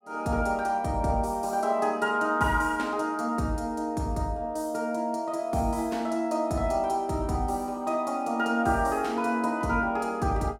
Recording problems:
none

